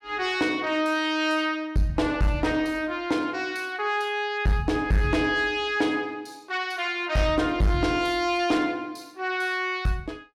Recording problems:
distorted audio; soft clipping, signal-to-distortion ratio 12 dB

